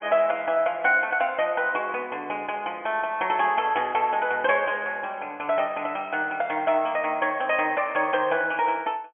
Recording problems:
treble missing; nothing above 3.2 kHz

